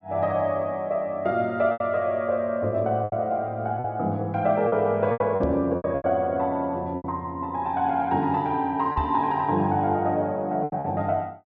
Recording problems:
packet loss; 7% of the sound replaced, filled with repeated pitch periods
microphone thump; at 5.5 s and at 9 s; peak -1 dB vs average level

